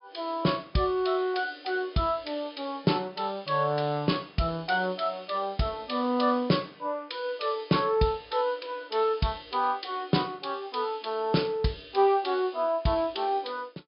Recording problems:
treble cut off; nothing above 5.5 kHz

